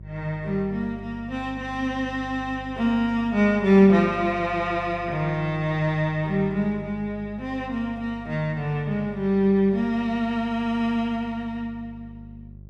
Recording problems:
electrical hum; 50 Hz, harmonics up to 400 Hz, SNR 18 dB

